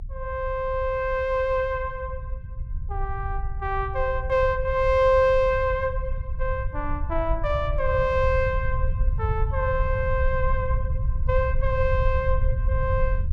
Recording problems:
rumble; below 78 Hz, SNR 4 dB

